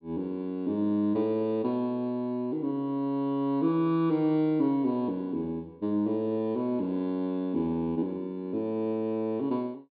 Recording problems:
low-pass filter; nothing above 4.7 kHz

